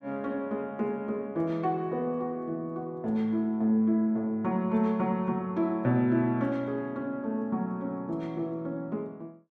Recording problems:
none

